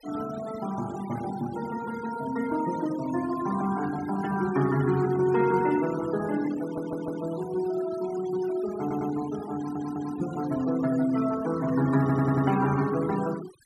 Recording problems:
noise reduction artefacts; signal-to-artefact ratio 16 dB
audio stuttering; 4 times, first at 6.5 s

